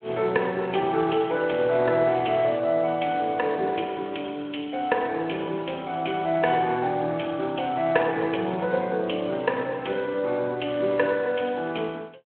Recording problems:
phone line; 220 Hz to 3.6 kHz, Speex

